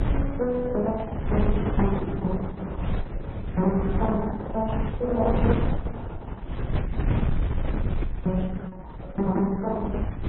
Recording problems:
lossy compression; Opus, then MP3, log-spectral distance 2 dB, nothing above 3.7 kHz
wind noise; below 160 Hz, SNR 3 dB

